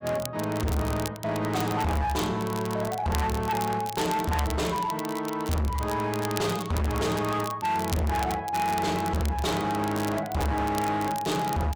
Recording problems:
distortion; hard clipping, signal-to-distortion ratio 6 dB
crackle; vinyl, SNR 13 dB

